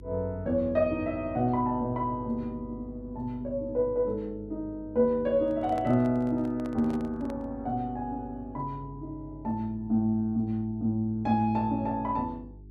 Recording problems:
hum; 50 Hz, harmonics up to 400 Hz, SNR 18 dB
microphone handling noise; from 5.5 to 7.5 s; peak -9 dB vs average level

